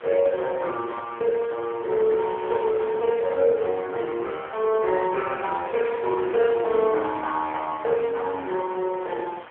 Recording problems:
telephone audio; 320 Hz to 3.5 kHz, AMR-NB
wind noise; below 2 kHz, SNR 19 dB

